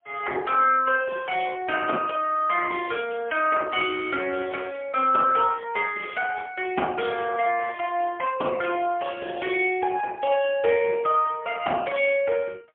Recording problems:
telephone audio; 280 Hz to 3.3 kHz, AMR-NB, then MP3

